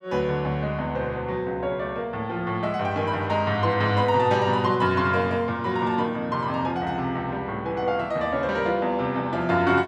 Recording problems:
none

